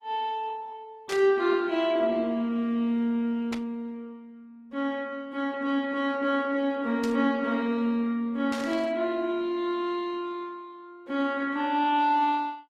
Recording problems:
codec artefacts; Opus, log-spectral distance 2 dB, nothing above 11 kHz
burst of static; 4 times, first at 1 s; peak -6 dB vs average level

